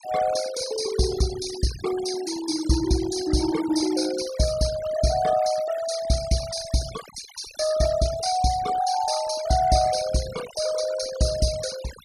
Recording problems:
noise reduction artefacts; signal-to-artefact ratio 13 dB

